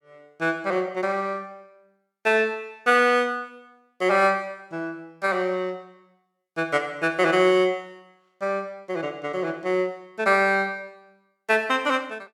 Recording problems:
none

